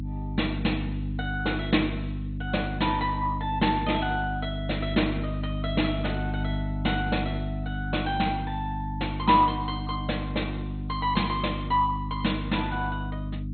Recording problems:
lossy codec; MP2, log-spectral distance 4 dB, nothing above 4.2 kHz
hum; 50 Hz, harmonics up to 300 Hz, SNR 4 dB

